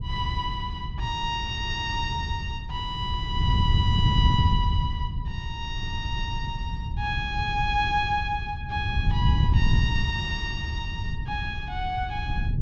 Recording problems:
treble missing; nothing above 8 kHz
wind on the microphone; below 120 Hz, SNR -1 dB

